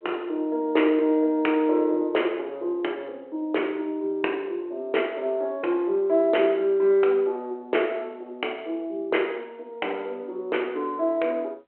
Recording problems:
telephone audio; 280 Hz to 3.3 kHz, G.726

